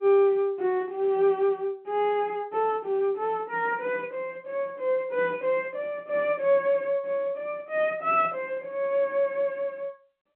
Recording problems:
phone line; 130 Hz to 3.9 kHz, G.711

